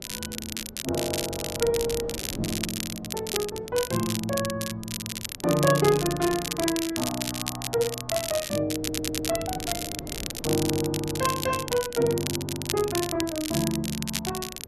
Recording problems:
wind noise; below 440 Hz, SNR 15 dB
crackling; vinyl, SNR 4 dB
stutter; at 9 s

